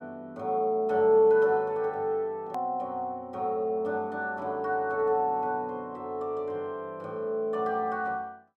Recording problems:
click at an edit; at 2.5 s

